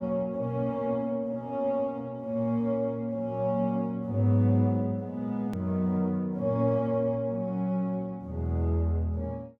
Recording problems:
edit click; at 5.5 s

